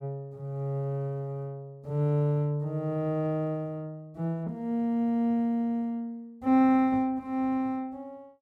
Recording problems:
none

